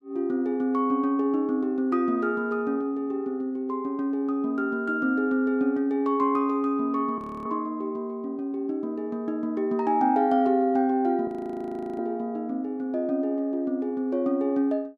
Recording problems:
audio freezing; at 7 s and at 11 s for 0.5 s

